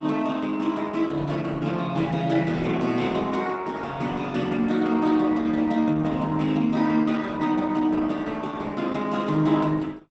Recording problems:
lossy compression; Opus, log-spectral distance 3 dB, nothing above 8 kHz

